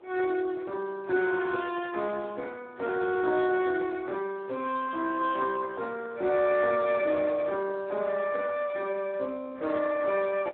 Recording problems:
phone line; 280 Hz to 3.5 kHz, Speex
background hiss; SNR 25 dB

